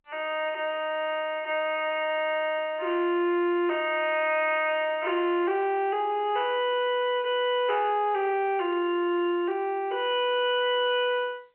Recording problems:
telephone audio; 300 Hz to 3.1 kHz, G.711
distortion; hard clipping, signal-to-distortion ratio 10 dB

